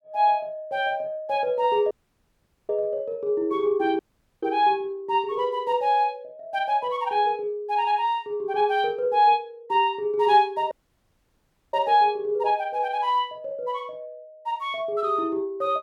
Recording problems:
dropout; at 2 s for 1 s, at 4 s and at 11 s for 1 s

